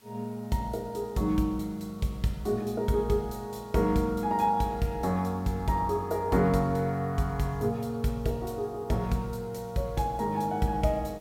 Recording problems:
hiss; slope -2 dB per octave, SNR 29 dB

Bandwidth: 16.5 kHz